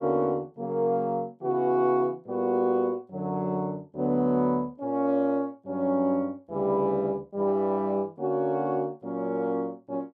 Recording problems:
none

